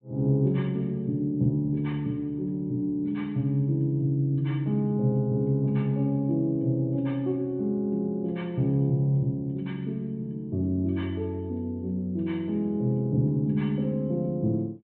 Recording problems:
treble cut off; nothing above 4 kHz

